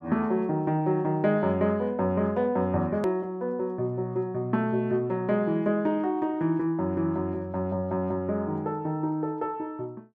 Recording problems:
edit click; at 3 s

